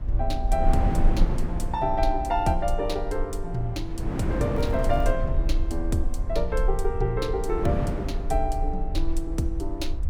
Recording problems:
low-frequency rumble; below 44 Hz, strongest tone 22 Hz, SNR 2 dB
wind on the microphone; below 330 Hz, SNR 3 dB
crackle; at 4.5 s; loose cable, SNR 27 dB

